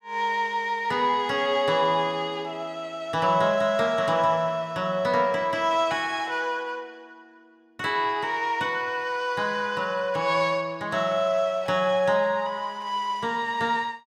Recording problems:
none

